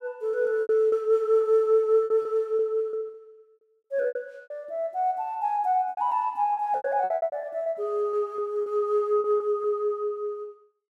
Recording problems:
lost packets; 13% of the sound replaced, filled with repeated pitch periods

